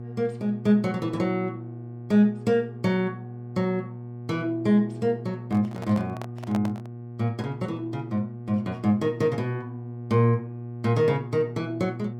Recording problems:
mains hum; 60 Hz, harmonics up to 720 Hz, SNR 11 dB
handling noise; from 5.5 to 7 s; peak -4 dB vs average level

